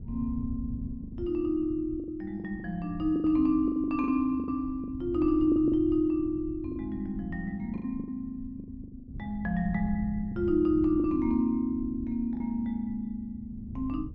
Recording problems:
wind noise; below 130 Hz, SNR 13 dB
lost packets; 9% of the sound replaced, filled with the last packet

